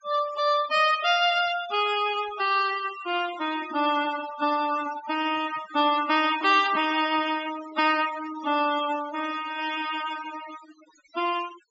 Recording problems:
treble cut off; nothing above 8 kHz
denoising artefacts; signal-to-artefact ratio 14 dB

